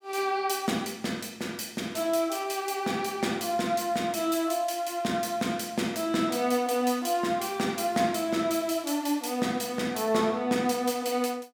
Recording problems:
none

